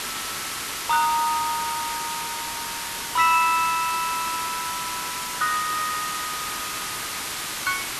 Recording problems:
hiss; SNR 3 dB

